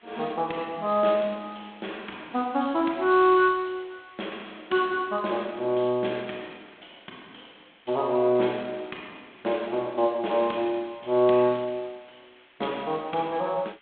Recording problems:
telephone audio; 220 Hz to 3.6 kHz, G.726
hiss; SNR 30 dB

